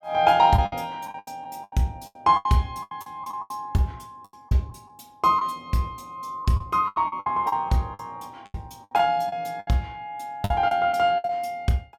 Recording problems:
packet loss; 13% of the sound replaced, filled with the last packet

